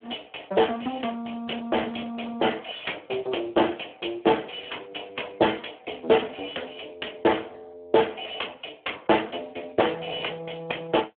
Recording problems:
phone line; 280 Hz to 3.4 kHz, Speex

